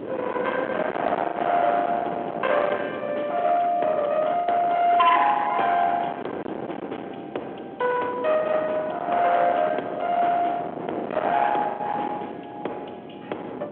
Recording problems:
telephone audio; 320 Hz to 3.4 kHz, G.726
distortion; hard clipping, signal-to-distortion ratio 7 dB
background hiss; SNR 40 dB
wind noise; below 980 Hz, SNR 9 dB
lost packets; 3% of the sound replaced, filled with the last packet

